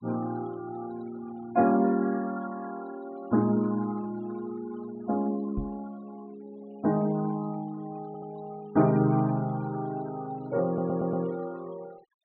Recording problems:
treble missing; nothing above 4.1 kHz
noise reduction artefacts; signal-to-artefact ratio 22 dB
microphone thump; at 5.5 s; peak -2 dB vs average level
stutter; at 8 s and at 11 s

